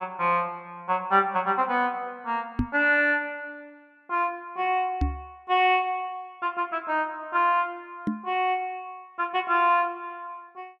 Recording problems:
knock on the microphone; at 2.5 s, at 5 s and at 8 s; peak +4 dB vs average level

